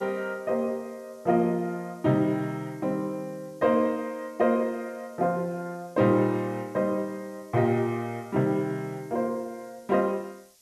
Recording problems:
background hiss; SNR 29 dB

